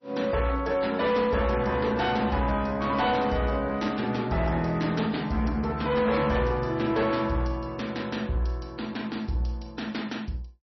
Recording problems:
codec artefacts; MP3, log-spectral distance 3 dB, nothing above 5.8 kHz
distortion; hard clipping, uneven, signal-to-distortion ratio 12 dB

